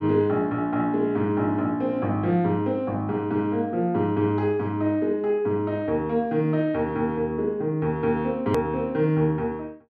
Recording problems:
hard cut with a click; at 8.5 s

